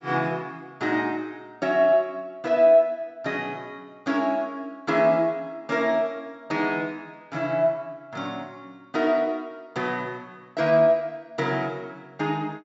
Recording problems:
treble cut off; nothing above 8 kHz

